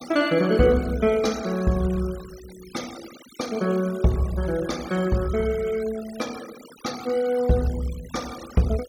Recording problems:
noise reduction artefacts; signal-to-artefact ratio 18 dB

